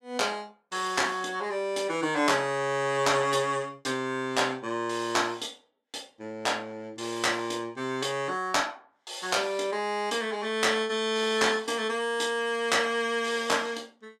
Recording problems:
none

